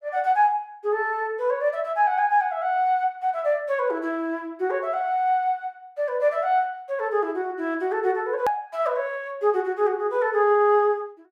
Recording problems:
hard cut with a click; at 8.5 s

